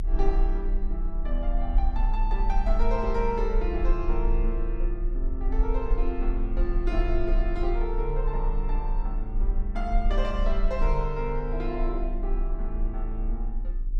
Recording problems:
hum; 50 Hz, harmonics up to 800 Hz, SNR 20 dB
low-frequency rumble; below 34 Hz, strongest tone 30 Hz, SNR -3 dB

